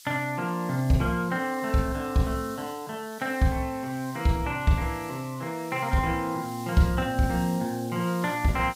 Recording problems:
hiss; SNR 19 dB

